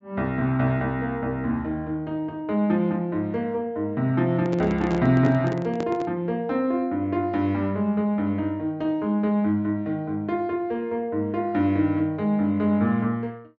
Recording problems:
treble missing; nothing above 8 kHz
microphone handling noise; from 4.5 to 6 s; peak -3 dB vs average level

